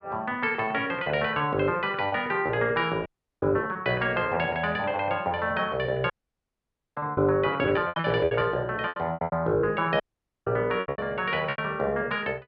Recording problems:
packet loss; 11% of the sound replaced, filled with repeated pitch periods
audio cutting out; at 3 s, at 6 s for 1 s and at 10 s

